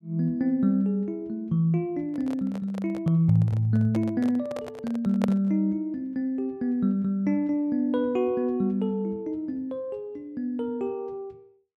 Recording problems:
handling noise; from 2 to 5.5 s; peak 0 dB vs average level

